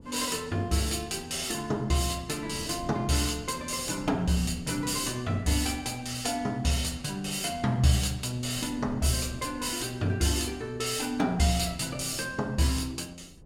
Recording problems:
wind on the microphone; below 280 Hz, SNR 19 dB

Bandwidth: 16 kHz